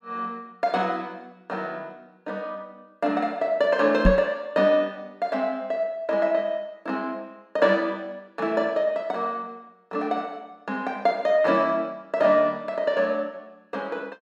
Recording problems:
microphone thump; at 4 s; peak +8 dB vs average level

